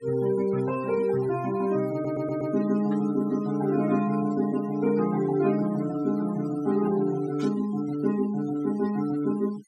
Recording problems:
noise reduction artefacts; signal-to-artefact ratio 19 dB
audio stuttering; at 2 s
static burst; at 3 s and at 7.5 s; peak -16 dB vs average level

